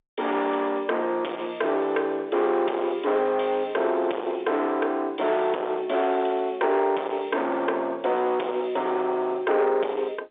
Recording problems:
telephone audio; 370 Hz to 3.6 kHz, G.711
distortion; soft clipping, signal-to-distortion ratio 10 dB

